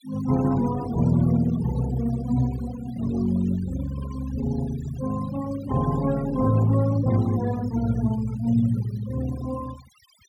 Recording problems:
noise reduction artefacts; signal-to-artefact ratio 17 dB

